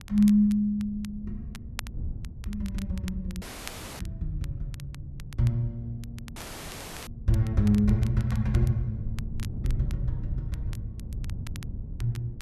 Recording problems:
wind on the microphone; below 120 Hz, SNR 11 dB
crackle; vinyl, SNR 21 dB
dropout; at 3.5 s for 0.5 s and at 6.5 s for 0.5 s

